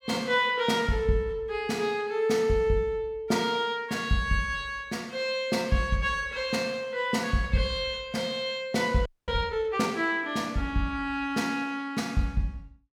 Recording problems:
audio freezing; at 9 s

